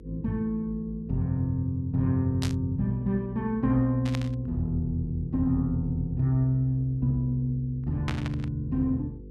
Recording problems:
electrical hum; 50 Hz, harmonics up to 500 Hz, SNR 19 dB
static burst; at 2.5 s, at 4 s and at 8 s; peak -2 dB vs average level

